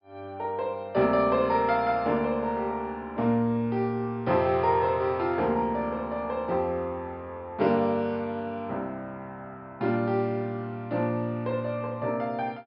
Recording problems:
low-pass filter; nothing above 5.5 kHz

